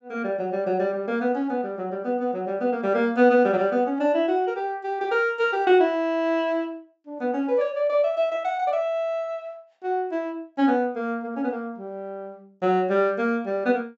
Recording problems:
treble missing; nothing above 7.8 kHz

